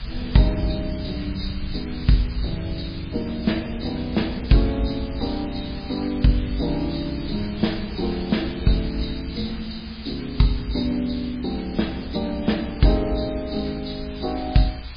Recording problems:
codec artefacts; MP3, log-spectral distance 13 dB, nothing above 11.3 kHz
background hiss; SNR 15 dB
rumble; below 78 Hz, SNR 11 dB

